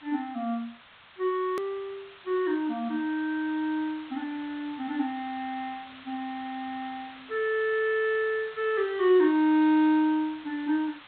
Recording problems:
treble missing; nothing above 4 kHz
hiss; SNR 20 dB
hard cut with a click; at 1.5 s

